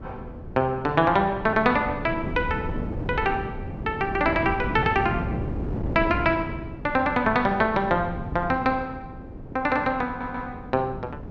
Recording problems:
wind noise; below 300 Hz, SNR 9 dB
audio stuttering; at 10 s

